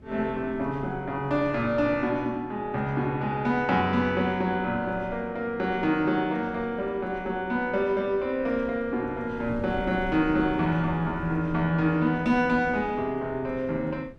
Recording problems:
wind on the microphone; below 270 Hz, SNR 19 dB

